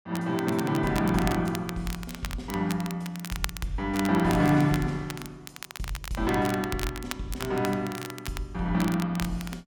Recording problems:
crackling; vinyl, SNR 11 dB

